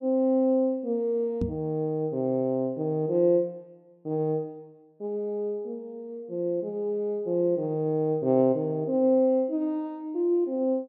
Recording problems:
knock on the microphone; at 1.5 s; peak +1 dB vs average level

